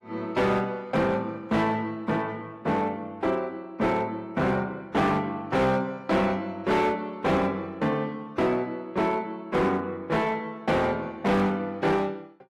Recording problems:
lossy codec; AAC, log-spectral distance 2 dB, nothing above 13.1 kHz
distortion; hard clipping, signal-to-distortion ratio 10 dB

